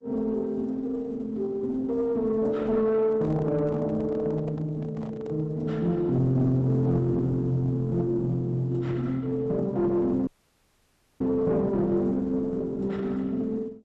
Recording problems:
lossy compression; Opus, log-spectral distance 2 dB
distortion; soft clipping, signal-to-distortion ratio 11 dB
handling noise; from 3 to 5.5 s; peak -8 dB vs average level
audio cutting out; at 10 s for 1 s

